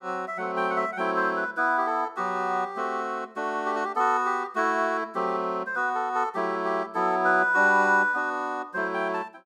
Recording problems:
none

